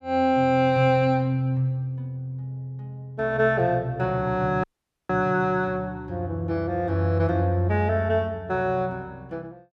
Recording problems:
audio cutting out; at 4.5 s

